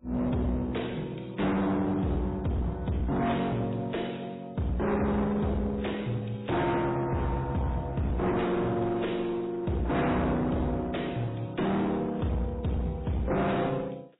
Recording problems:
lossy compression; AAC, then MP3, log-spectral distance 4 dB, nothing above 3.8 kHz
distorted audio; hard clipping, uneven, signal-to-distortion ratio 5 dB

